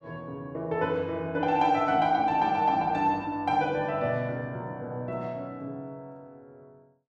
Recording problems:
none

